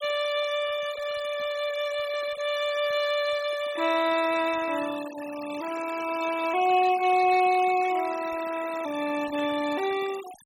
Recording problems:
denoising artefacts; signal-to-artefact ratio 14 dB

